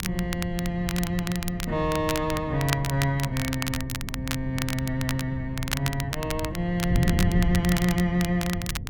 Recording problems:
wind on the microphone; below 150 Hz, SNR 6 dB
crackle; vinyl, SNR 7 dB

